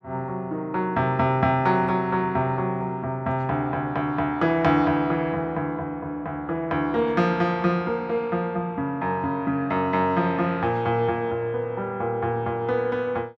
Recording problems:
none

